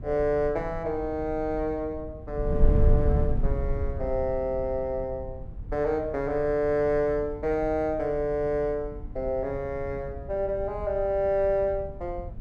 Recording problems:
wind on the microphone; below 100 Hz, SNR 6 dB

